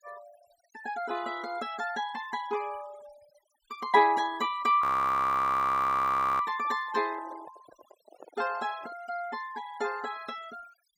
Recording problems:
denoising artefacts; signal-to-artefact ratio 21 dB
audio freezing; at 5 s for 1.5 s
microphone handling noise; from 6.5 to 9 s; peak -15 dB vs average level

